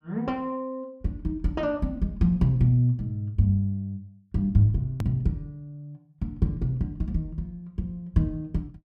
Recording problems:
click at an edit; at 5 s

